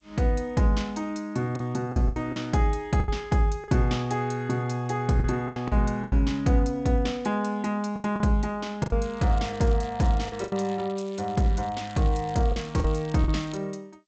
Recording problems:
lossy compression; G.722, log-spectral distance 4 dB, nothing above 7.6 kHz
packet loss; 7% of the sound replaced, filled with the last packet
crackling; from 9 to 10 s and from 10 to 14 s; loose cable, SNR 23 dB

